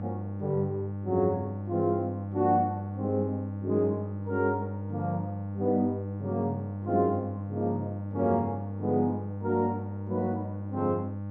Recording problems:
hum; 50 Hz, harmonics up to 1.1 kHz, SNR 5 dB

